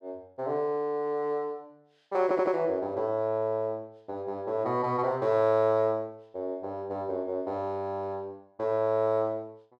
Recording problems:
audio stuttering; at 2 s

